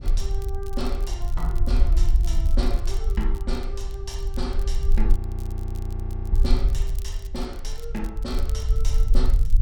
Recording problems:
rumble; below 50 Hz, SNR -8 dB
crackling; vinyl, SNR 15 dB
frozen audio; at 5 s for 1 s

